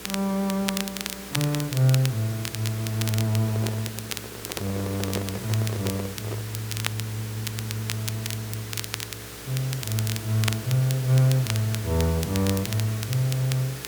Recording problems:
electrical hum; 60 Hz, harmonics up to 480 Hz, SNR 19 dB
background hiss; slope -1 dB per octave, SNR 11 dB
crackling; vinyl, SNR 8 dB
microphone handling noise; from 3.5 to 6.5 s; peak -1 dB vs average level

